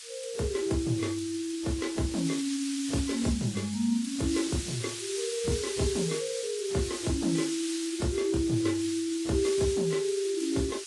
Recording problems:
codec artefacts; AAC, log-spectral distance 9 dB, nothing above 10.7 kHz
background hiss; slope +7 dB per octave, SNR 7 dB

